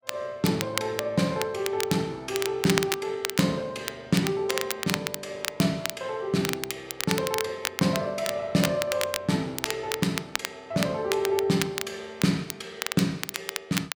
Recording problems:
crackle; vinyl, SNR 5 dB

